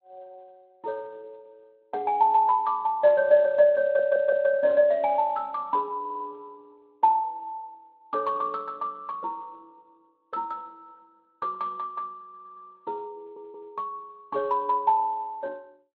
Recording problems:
lossy compression; Speex, log-spectral distance 2 dB
stutter; 4 times, first at 4 s

